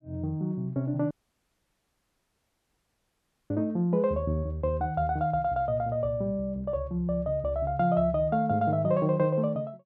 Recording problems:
audio cutting out; at 1 s for 2.5 s

